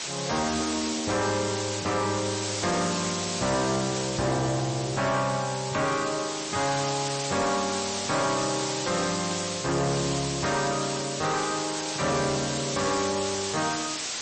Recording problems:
lossy compression; MP3, log-spectral distance 20 dB, nothing above 8.2 kHz
distorted audio; soft clipping, signal-to-distortion ratio 11 dB
hiss; slope 0 dB per octave, SNR 3 dB

